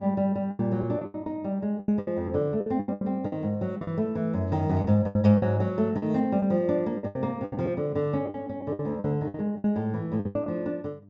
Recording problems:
treble cut off; nothing above 8 kHz
hum; 50 Hz, harmonics up to 700 Hz, SNR 25 dB
packet loss; 14% of the sound replaced, filled with the last packet

